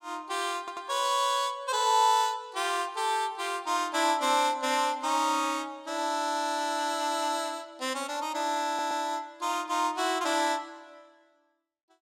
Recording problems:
audio stuttering; at 0.5 s and at 8.5 s

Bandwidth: 16.5 kHz